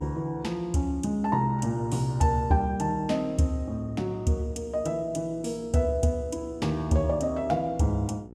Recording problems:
hum; 60 Hz, harmonics up to 960 Hz, SNR 20 dB

